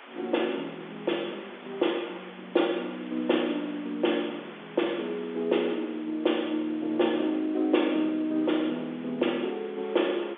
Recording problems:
telephone audio; 260 Hz to 3.6 kHz, G.711
background hiss; SNR 18 dB

